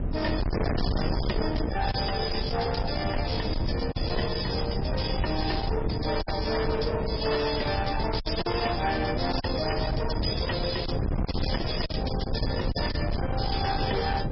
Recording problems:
lossy compression; MP3, log-spectral distance 9 dB, nothing above 5 kHz
distorted audio; hard clipping, signal-to-distortion ratio 6 dB
wind noise; below 270 Hz, SNR 2 dB
lost packets; 3% of the sound replaced, filled with silence

